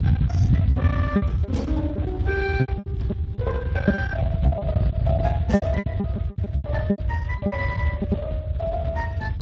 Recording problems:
lossy compression; Speex, log-spectral distance 2 dB
distortion; soft clipping, signal-to-distortion ratio 10 dB
low-frequency rumble; below 180 Hz, SNR -5 dB
packet loss; 13% of the sound replaced, filled with repeated pitch periods

